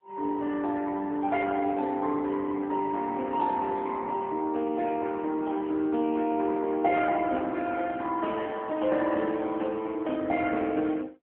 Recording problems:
phone line; 220 Hz to 2.6 kHz, AMR-NB

